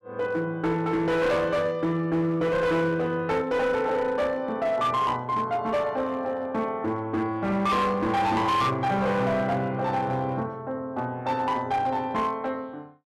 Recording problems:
distortion; hard clipping, uneven, signal-to-distortion ratio 10 dB

